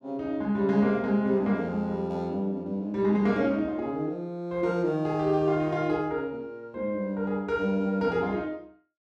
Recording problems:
none

